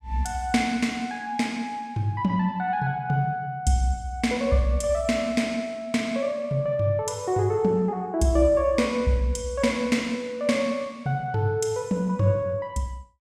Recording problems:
none

